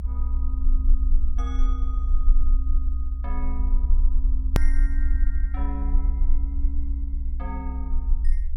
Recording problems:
background hiss; slope -9 dB per octave, SNR 25 dB
low-frequency rumble; below 58 Hz, strongest tone 24 Hz, SNR -15 dB
click at an edit; at 4.5 s

